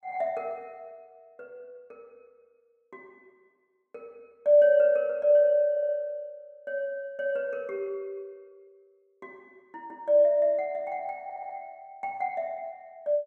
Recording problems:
stutter; at 5.5 s and at 11 s

